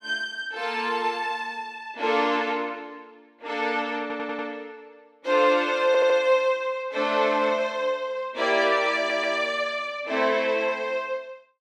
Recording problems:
audio stuttering; at 4 s, at 6 s and at 9 s

